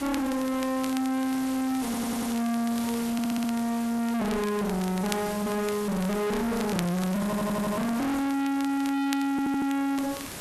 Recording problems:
distortion; hard clipping, uneven, signal-to-distortion ratio 5 dB
hiss; slope -3 dB per octave, SNR 11 dB
crackle; vinyl, SNR 16 dB
audio stuttering; 4 times, first at 2 s

